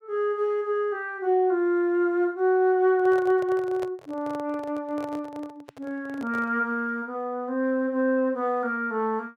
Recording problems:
handling noise; from 3 to 6.5 s; peak -8 dB vs average level

